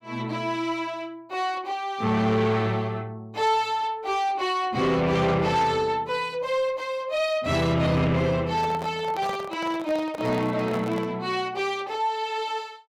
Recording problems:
distorted audio; soft clipping, signal-to-distortion ratio 12 dB
microphone handling noise; from 8.5 to 11 s; peak -5 dB vs average level

